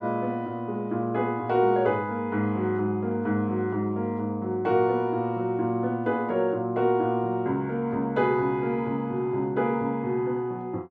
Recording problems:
none

